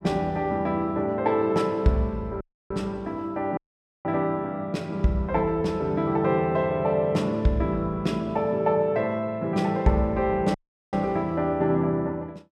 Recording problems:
dropout; at 2.5 s, at 3.5 s and at 11 s

